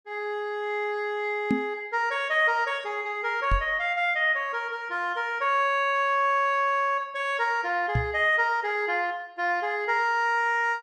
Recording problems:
microphone thump; at 1.5 s, at 3.5 s and at 8 s; peak +4 dB vs average level

